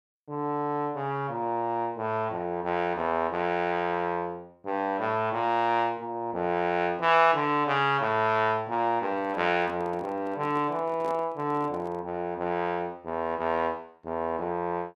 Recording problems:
handling noise; from 9 to 12 s; peak -9 dB vs average level

